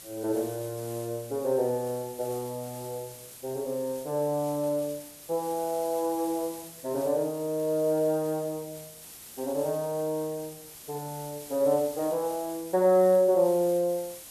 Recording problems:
background hiss; slope -1 dB per octave, SNR 15 dB

